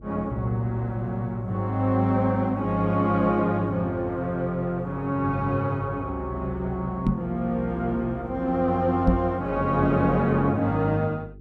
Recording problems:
hum; 50 Hz, harmonics up to 450 Hz, SNR 21 dB
microphone bump; at 7 s and at 9 s; peak +7 dB vs average level

